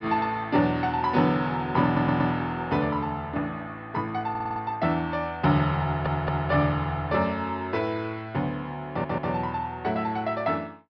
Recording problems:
treble cut off; nothing above 5.5 kHz
stutter; 4 times, first at 2 s

